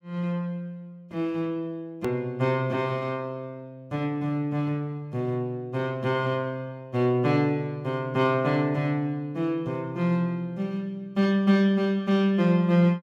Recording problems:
click at an edit; at 2 s

